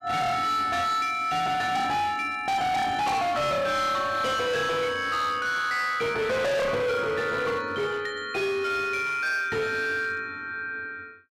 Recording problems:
distorted audio; hard clipping, signal-to-distortion ratio 6 dB

